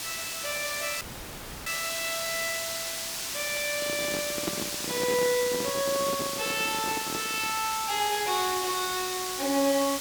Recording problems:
hiss; slope +1 dB per octave, SNR 2 dB
dropout; at 1 s for 0.5 s
microphone handling noise; from 3.5 to 7.5 s; peak +2 dB vs average level

